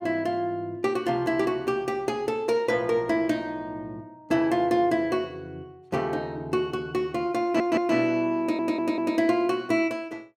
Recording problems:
audio stuttering; at 7.5 s and at 8.5 s

